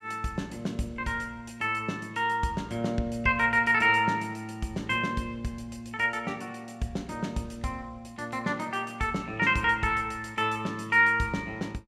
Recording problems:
none

